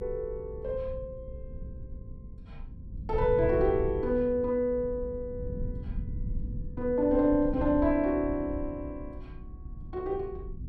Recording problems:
rumble; below 120 Hz, SNR 11 dB

